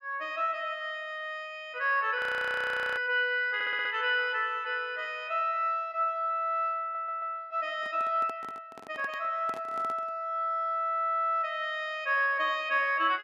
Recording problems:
audio freezing; at 2 s for 1 s
stutter; at 3.5 s and at 7 s
handling noise; from 8 to 10 s; peak -11 dB vs average level

